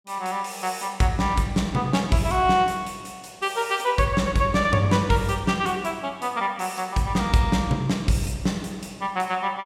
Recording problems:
none

